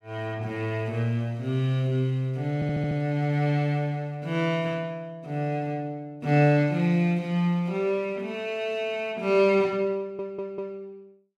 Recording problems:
stutter; at 2.5 s and at 10 s

